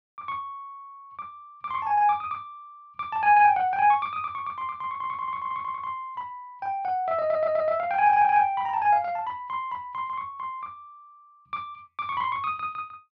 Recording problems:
stutter; at 5 s and at 7 s

